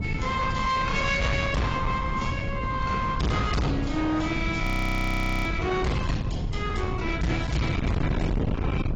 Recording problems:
lossy compression; AAC, log-spectral distance 3 dB, nothing above 18.9 kHz
distorted audio; hard clipping, signal-to-distortion ratio 6 dB
wind noise; below 250 Hz, SNR 3 dB
frozen audio; at 4.5 s for 1 s

